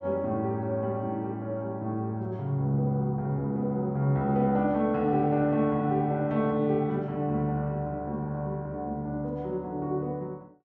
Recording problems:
none

